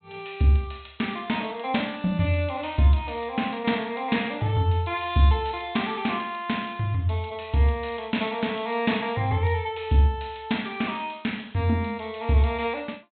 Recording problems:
treble cut off; nothing above 4 kHz

